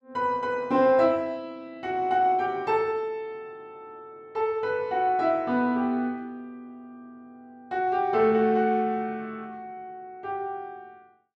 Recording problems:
none

